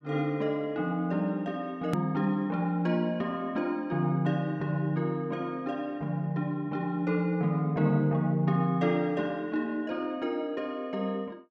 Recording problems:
edit click; at 2 s

